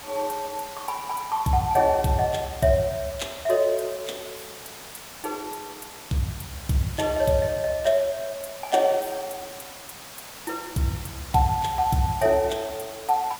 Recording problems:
background hiss; SNR 14 dB

